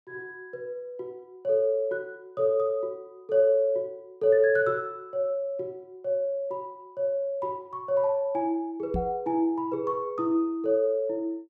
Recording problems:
microphone bump; at 9 s; peak -1 dB vs average level

